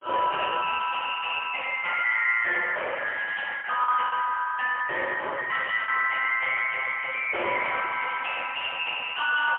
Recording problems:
telephone audio; 370 Hz to 3.2 kHz, AMR-NB, then MP3
distorted audio; soft clipping, signal-to-distortion ratio 7 dB
lost packets; 1.7% of the sound replaced, filled with the last packet

